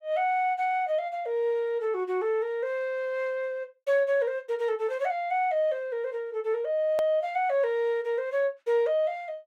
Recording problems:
hard cut with a click; at 7 s

